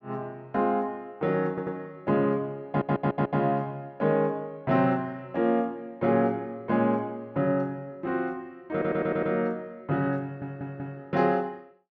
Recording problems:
audio stuttering; 4 times, first at 1.5 s

